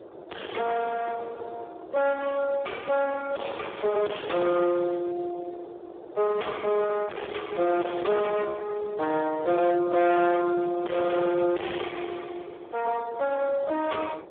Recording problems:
telephone audio; 300 Hz to 2 kHz, Speex
distortion; soft clipping, signal-to-distortion ratio 3 dB
wind noise; below 780 Hz, SNR 18 dB

